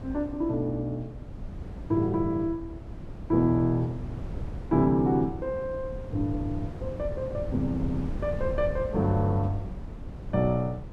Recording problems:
wind on the microphone; below 170 Hz, SNR 10 dB

